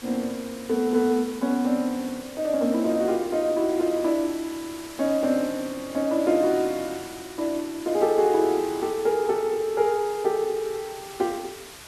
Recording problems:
hiss; slope -1 dB per octave, SNR 17 dB

